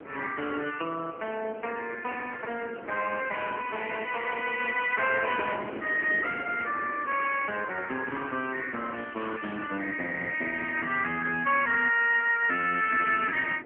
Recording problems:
telephone audio; 260 Hz to 3 kHz, AMR-NB
wind noise; below 650 Hz, SNR 16 dB

